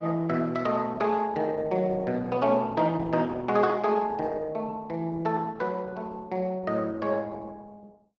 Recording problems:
lossy compression; Opus, log-spectral distance 3 dB

